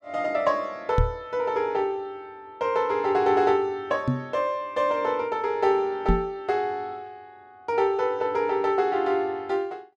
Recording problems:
microphone bump; at 1 s, at 4 s and at 6 s; peak +5 dB vs average level

